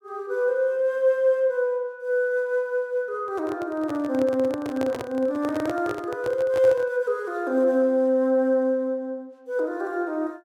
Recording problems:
microphone handling noise; from 3 to 7 s; peak -4 dB vs average level

